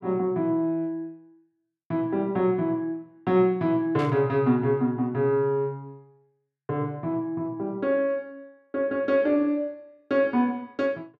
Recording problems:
burst of static; at 4 s; peak -10 dB vs average level

